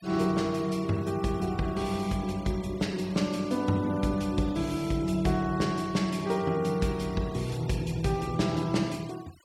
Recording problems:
noise reduction artefacts; signal-to-artefact ratio 21 dB

